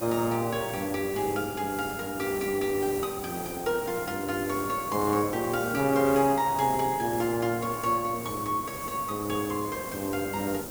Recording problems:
hiss; SNR 9 dB

